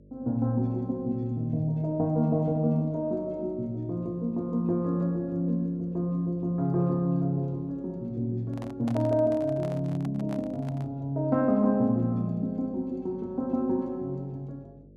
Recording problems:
hum; 50 Hz, harmonics up to 600 Hz, SNR 25 dB
handling noise; from 8.5 to 11 s; peak -8 dB vs average level

